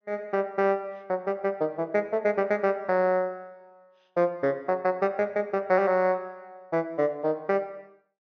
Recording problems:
treble cut off; nothing above 6.6 kHz

